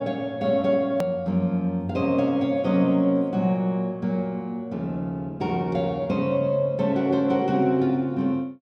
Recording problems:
click at an edit; at 1 s

